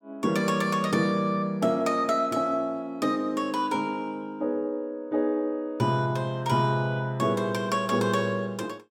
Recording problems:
none

